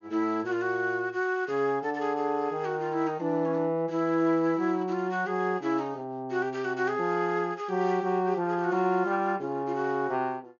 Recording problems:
treble missing; nothing above 6.7 kHz

